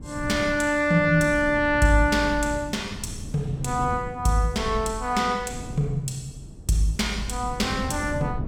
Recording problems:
wind on the microphone; below 190 Hz, SNR 13 dB

